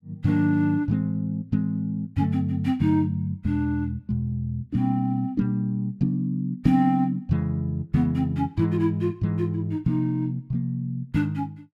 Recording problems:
none

